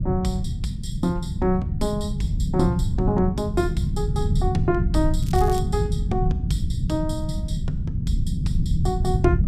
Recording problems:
rumble; below 150 Hz, SNR -1 dB
crackle; at 5 s; loose cable, SNR 16 dB

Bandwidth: 14.5 kHz